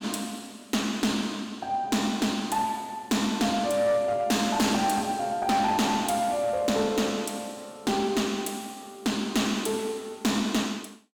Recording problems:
distorted audio; hard clipping, uneven, signal-to-distortion ratio 11 dB

